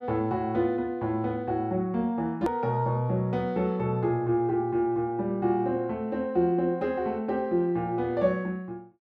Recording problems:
edit click; at 2.5 s

